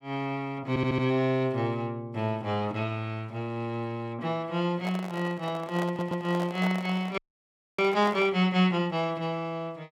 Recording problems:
stutter; at 0.5 s and at 6 s
handling noise; from 5 to 8.5 s; peak -2 dB vs average level
frozen audio; at 7 s for 0.5 s

